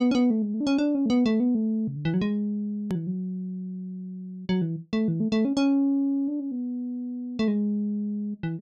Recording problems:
hard cut with a click; at 3 s

